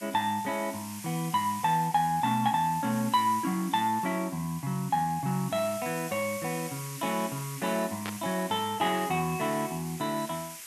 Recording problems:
hiss; SNR 12 dB
burst of static; at 8 s; peak -4 dB vs average level

